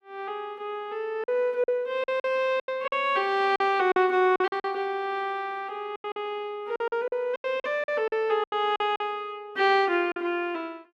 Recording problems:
packet loss; 10% of the sound replaced, filled with silence

